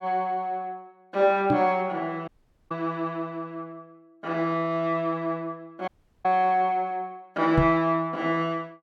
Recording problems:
microphone thump; at 1.5 s and at 7.5 s; peak +7 dB vs average level
audio cutting out; at 2.5 s and at 6 s

